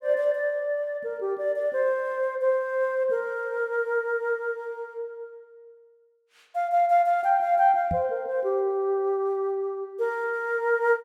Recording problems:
microphone thump; at 8 s; peak -2 dB vs average level

